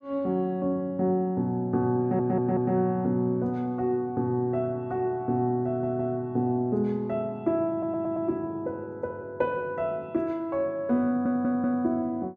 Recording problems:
audio stuttering; 4 times, first at 2 s

